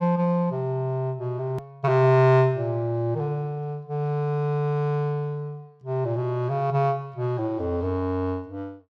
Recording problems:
click at an edit; at 1.5 s

